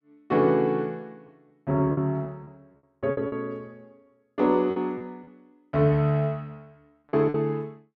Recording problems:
lost packets; 8% of the sound replaced, filled with repeated pitch periods

